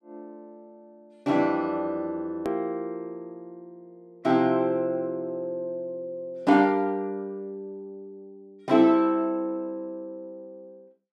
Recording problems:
hard cut with a click; at 2.5 s

